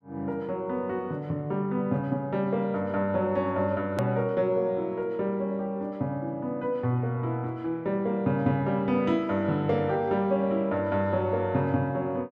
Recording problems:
click at an edit; at 4 s

